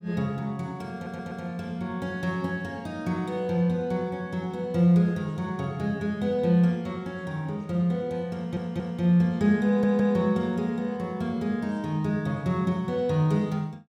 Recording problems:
stutter; at 1 s, at 8.5 s and at 9.5 s

